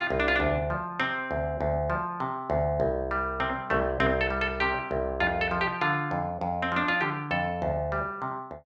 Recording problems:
none

